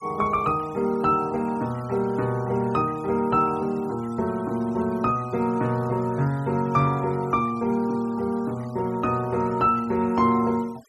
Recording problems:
denoising artefacts; signal-to-artefact ratio 25 dB

